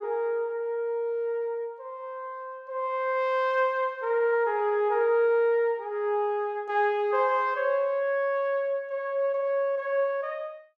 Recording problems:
none

